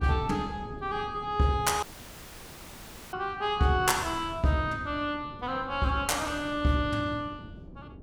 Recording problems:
wind on the microphone; below 270 Hz, SNR 16 dB
dropout; at 2 s for 1.5 s

